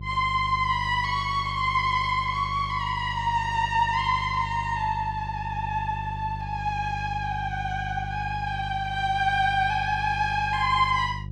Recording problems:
hum; 50 Hz, harmonics up to 400 Hz, SNR 10 dB

